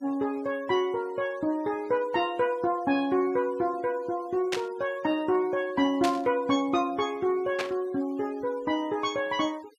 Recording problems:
noise reduction artefacts; signal-to-artefact ratio 24 dB
static burst; at 4.5 s, at 6 s and at 7.5 s; peak +1 dB vs average level

